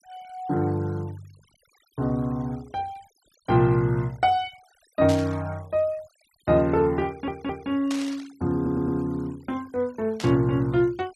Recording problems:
noise reduction artefacts; signal-to-artefact ratio 27 dB
burst of static; at 5 s, at 8 s and at 10 s; peak -5 dB vs average level
audio stuttering; at 7 s and at 8.5 s

